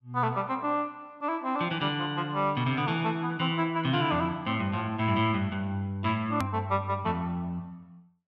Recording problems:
hard cut with a click; at 6.5 s

